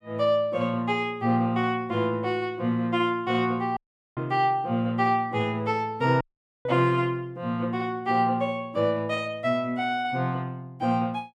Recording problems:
audio cutting out; at 4 s and at 6 s

